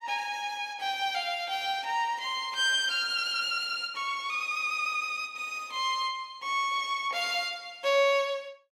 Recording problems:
none

